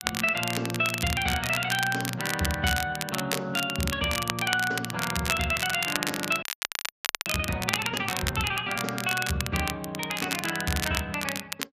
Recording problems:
lossy codec; Speex, log-spectral distance 3 dB
crackle; vinyl, SNR 4 dB
frozen audio; at 6.5 s for 1 s

